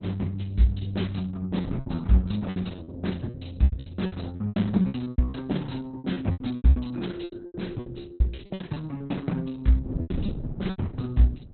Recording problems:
lossy codec; Opus, log-spectral distance 4 dB, nothing above 4.1 kHz
wind on the microphone; below 210 Hz, SNR 13 dB
packet loss; 17% of the sound replaced, filled with repeated pitch periods

